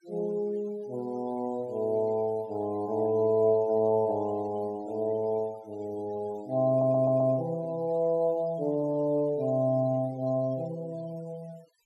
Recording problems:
noise reduction artefacts; signal-to-artefact ratio 27 dB
audio stuttering; at 6.5 s

